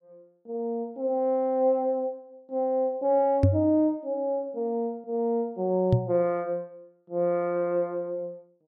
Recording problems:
microphone thump; at 3.5 s and at 6 s; peak +9 dB vs average level

